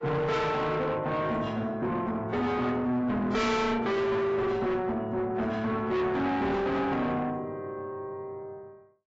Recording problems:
codec artefacts; AAC, log-spectral distance 2 dB, nothing above 7.6 kHz
distorted audio; soft clipping, signal-to-distortion ratio 6 dB

